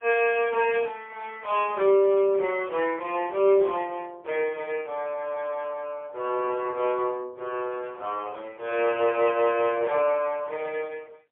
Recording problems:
phone line; 340 Hz to 3.3 kHz, AMR-NB, then MP3

